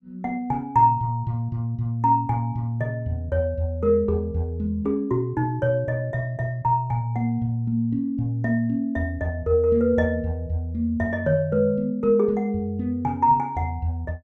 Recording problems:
none

